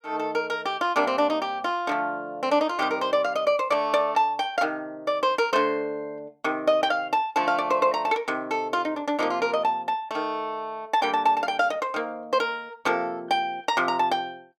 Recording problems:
none

